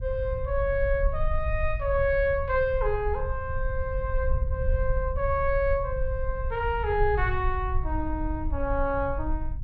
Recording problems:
rumble; below 64 Hz, SNR 4 dB

